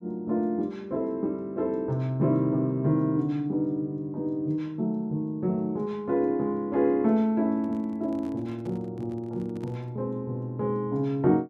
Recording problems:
handling noise; from 7.5 to 10 s; peak -11 dB vs average level

